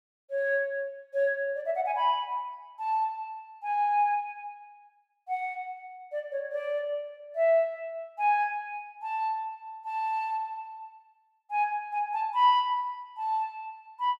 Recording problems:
none

